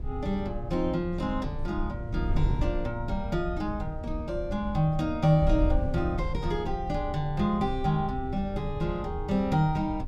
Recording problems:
wind noise; below 84 Hz, SNR 6 dB

